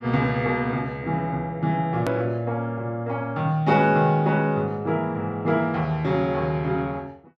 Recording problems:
hard cut with a click; at 2 s

